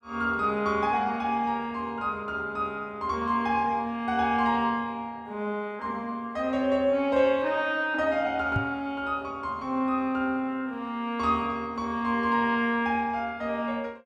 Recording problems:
knock on the microphone; at 8.5 s; peak +3 dB vs average level

